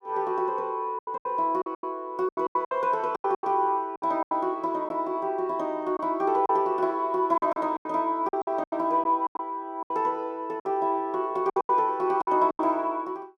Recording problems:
packet loss; 13% of the sound replaced, filled with silence

